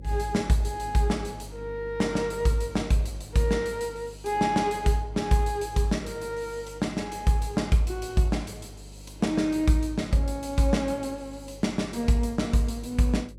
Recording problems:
hum; 50 Hz, harmonics up to 550 Hz, SNR 18 dB

